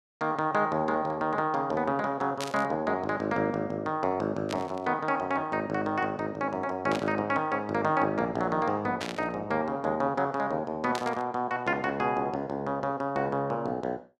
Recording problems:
burst of static; 5 times, first at 2.5 s; peak -2 dB vs average level

